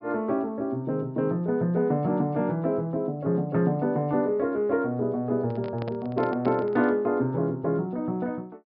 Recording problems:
treble missing; nothing above 5.5 kHz
microphone handling noise; from 5.5 to 7 s; peak -7 dB vs average level

